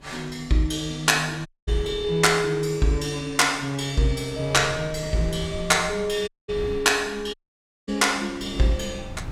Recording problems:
wind noise; below 200 Hz, SNR 18 dB
dropout; at 1.5 s, at 6.5 s and at 7.5 s for 0.5 s

